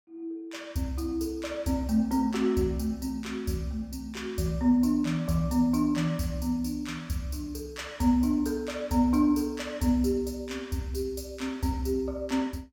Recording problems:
none

